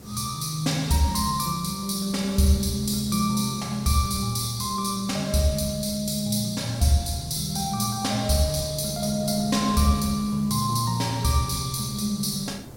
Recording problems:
background hiss; slope +1 dB per octave, SNR 27 dB
wind noise; below 380 Hz, SNR 21 dB

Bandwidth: 16.5 kHz